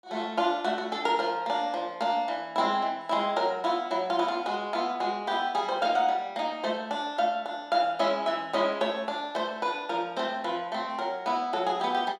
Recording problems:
none

